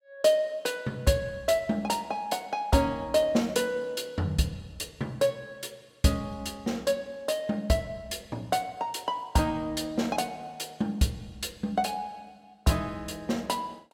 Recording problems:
none

